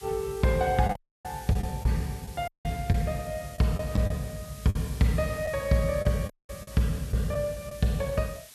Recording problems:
background hiss; slope +2 dB per octave, SNR 18 dB
lost packets; 6% of the sound replaced, filled with the last packet
dropout; at 1 s, at 2.5 s and at 6.5 s

